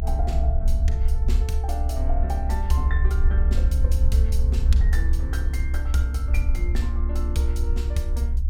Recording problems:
rumble; below 66 Hz, SNR -8 dB

